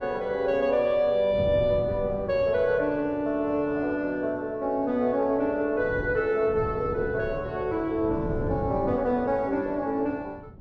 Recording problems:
wind noise; below 240 Hz, SNR 12 dB

